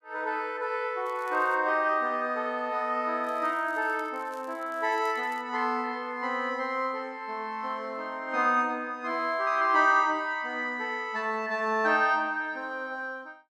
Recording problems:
crackle; at 1 s and from 3 to 5.5 s; loose cable, SNR 29 dB

